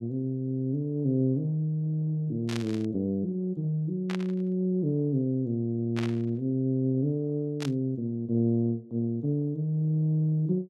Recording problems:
static burst; 4 times, first at 2.5 s; peak -5 dB vs average level

